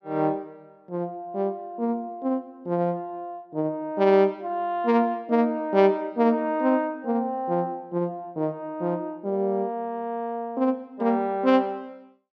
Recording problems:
none

